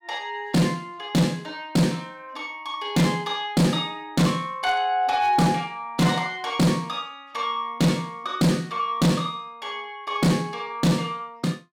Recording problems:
distortion; hard clipping, uneven, signal-to-distortion ratio 8 dB

